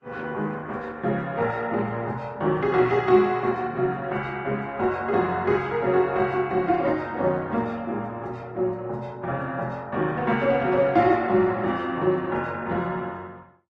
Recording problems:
lossy compression; Opus, then Vorbis, log-spectral distance 2 dB

